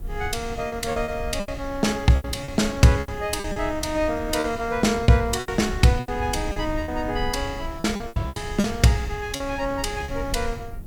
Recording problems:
hiss; SNR 29 dB
low-frequency rumble; below 92 Hz, SNR 13 dB
wind noise; below 380 Hz, SNR 20 dB
lost packets; 11% of the sound replaced, filled with repeated pitch periods

